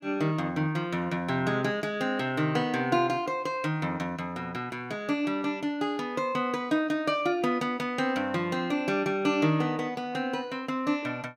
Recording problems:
none

